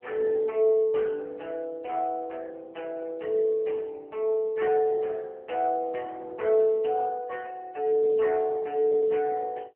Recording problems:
phone line; 320 Hz to 2.9 kHz, AMR-NB

